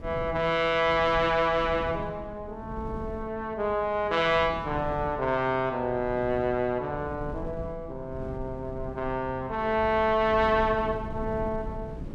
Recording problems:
wind on the microphone; below 220 Hz, SNR 14 dB

